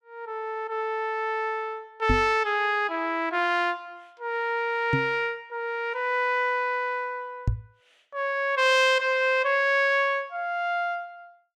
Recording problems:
microphone bump; at 2 s, at 5 s and at 7.5 s; peak +4 dB vs average level

